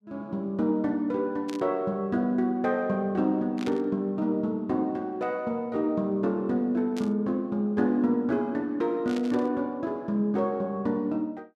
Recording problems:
burst of static; 4 times, first at 1.5 s; peak -8 dB vs average level

